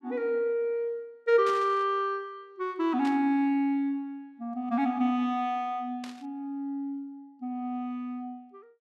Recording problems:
static burst; at 1.5 s, at 3 s and at 6 s; peak -8 dB vs average level

